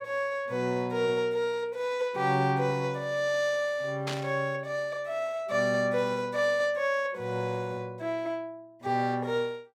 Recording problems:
static burst; at 4 s; peak -2 dB vs average level

